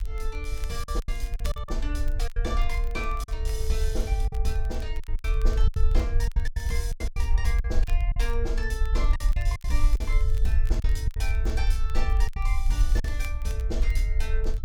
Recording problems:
rumble; below 54 Hz, SNR -7 dB
crackle; vinyl, SNR 18 dB
packet loss; 10% of the sound replaced, filled with silence

